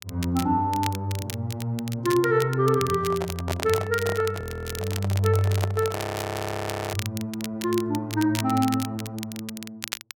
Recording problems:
crackling; vinyl, SNR 11 dB
handling noise; from 3 to 6 s; peak +1 dB vs average level
frozen audio; at 4.5 s and at 6 s for 1 s

